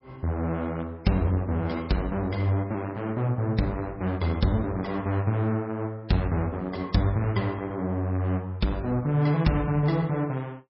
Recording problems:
codec artefacts; MP3, log-spectral distance 2 dB, nothing above 5.5 kHz

